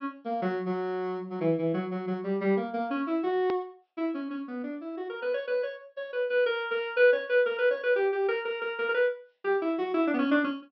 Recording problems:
low-pass filter; nothing above 5.5 kHz
hard cut with a click; at 3.5 s

